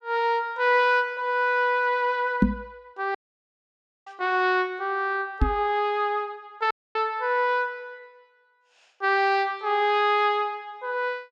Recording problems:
microphone thump; at 2.5 s and at 5.5 s; peak +8 dB vs average level
audio cutting out; at 3 s for 1 s and at 6.5 s

